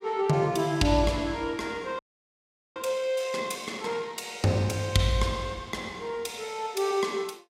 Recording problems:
frozen audio; at 2 s for 1 s

